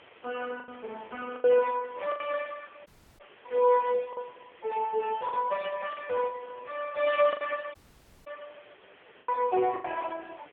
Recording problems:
phone line; 300 Hz to 2.9 kHz, AMR-NB
hiss; SNR 25 dB
lost packets; 7% of the sound replaced, filled with the last packet
audio cutting out; at 3 s and at 8 s for 0.5 s

